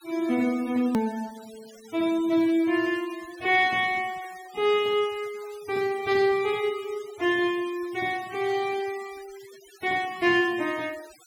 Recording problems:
noise reduction artefacts; signal-to-artefact ratio 21 dB
edit click; at 1 s

